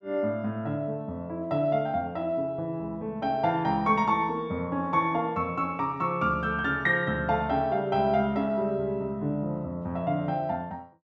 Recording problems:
none

